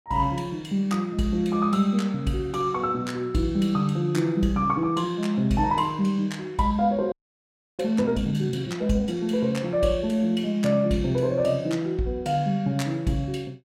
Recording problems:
frozen audio; at 7 s for 0.5 s

